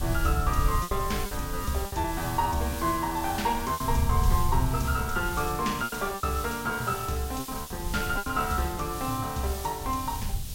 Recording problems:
background hiss; SNR 9 dB
wind on the microphone; below 90 Hz, SNR 5 dB
lost packets; 7% of the sound replaced, filled with repeated pitch periods

